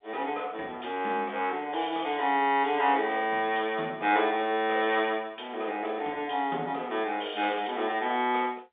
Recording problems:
telephone audio; 280 Hz to 3.6 kHz, G.711

